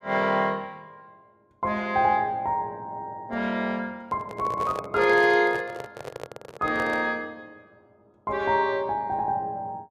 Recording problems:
handling noise; from 4 to 7 s; peak -5 dB vs average level

